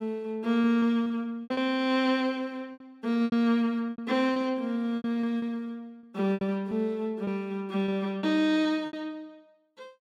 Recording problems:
lost packets; 11% of the sound replaced, filled with repeated pitch periods

